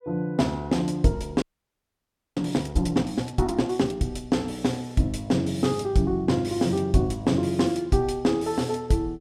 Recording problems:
frozen audio; at 1.5 s for 1 s

